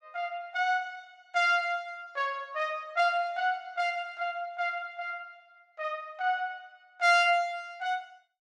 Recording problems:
none

